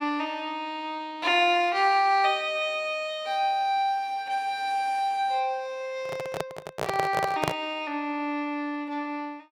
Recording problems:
handling noise; from 6 to 7.5 s; peak +4 dB vs average level

